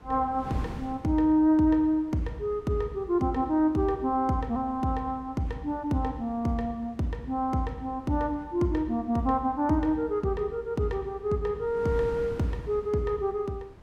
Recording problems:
wind noise; below 430 Hz, SNR 20 dB

